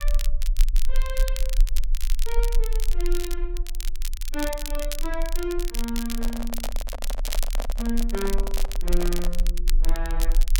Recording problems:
low-frequency rumble; below 34 Hz, strongest tone 22 Hz, SNR -3 dB
crackling; vinyl, SNR 4 dB
handling noise; from 6 to 9.5 s; peak +2 dB vs average level

